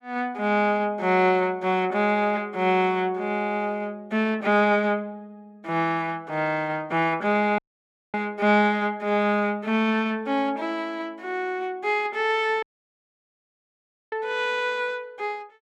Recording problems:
audio cutting out; at 7.5 s for 0.5 s and at 13 s for 1.5 s

